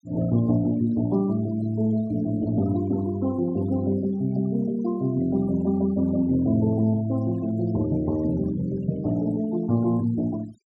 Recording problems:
denoising artefacts; signal-to-artefact ratio 21 dB

